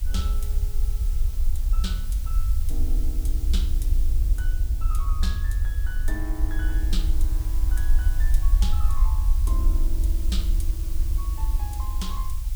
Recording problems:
background hiss; slope +3 dB per octave, SNR 5 dB
rumble; below 54 Hz, SNR -13 dB
wind noise; below 160 Hz, SNR 15 dB

